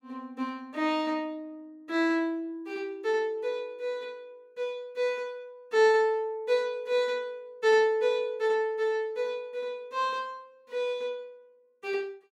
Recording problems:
none

